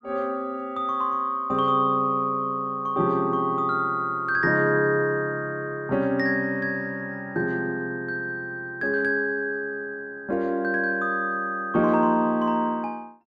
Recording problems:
none

